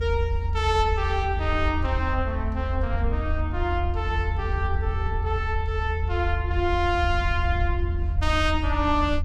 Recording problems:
low-frequency rumble; below 80 Hz, SNR 0 dB

